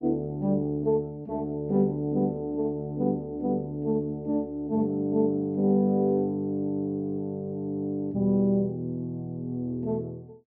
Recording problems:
none

